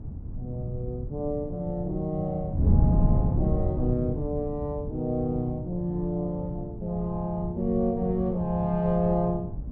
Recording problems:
wind on the microphone; below 160 Hz, SNR 2 dB

